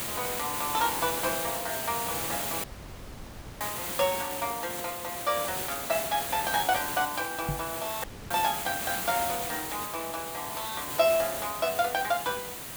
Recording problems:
background hiss; slope -2 dB per octave, SNR 2 dB
dropout; at 2.5 s for 1 s and at 8 s
microphone bump; at 7.5 s; peak +2 dB vs average level

